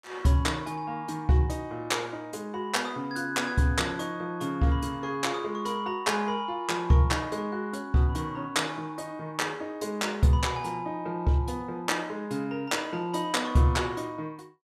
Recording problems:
none

